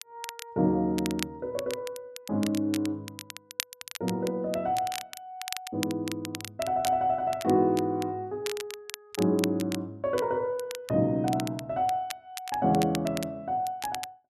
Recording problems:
crackling; vinyl, SNR 11 dB

